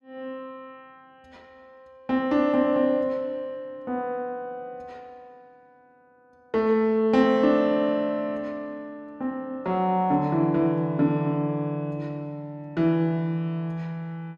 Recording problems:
none

